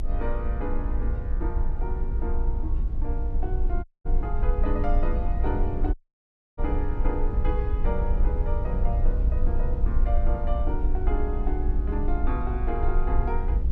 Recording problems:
rumble; below 54 Hz, strongest tone 22 Hz, SNR -6 dB
dropout; at 4 s and at 6 s for 0.5 s

